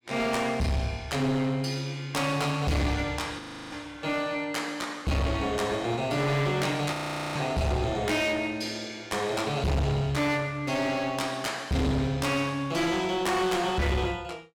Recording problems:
distortion; hard clipping, uneven, signal-to-distortion ratio 7 dB
frozen audio; at 3.5 s and at 7 s

